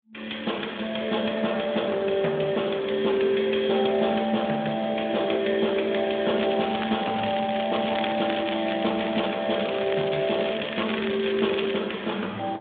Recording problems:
phone line; 170 Hz to 3.6 kHz, Speex
crackling; from 6.5 to 9.5 s and from 9.5 to 12 s; loose cable, SNR 10 dB

